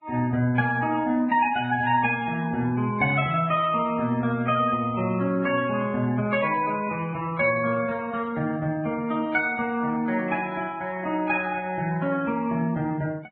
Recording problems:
codec artefacts; Vorbis, log-spectral distance 2 dB

